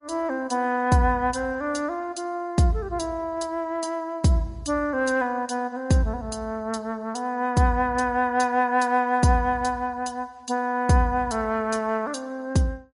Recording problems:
lossy compression; MP3, log-spectral distance 2 dB, nothing above 10.4 kHz

